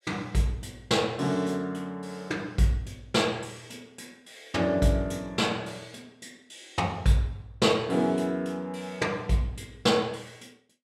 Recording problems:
none

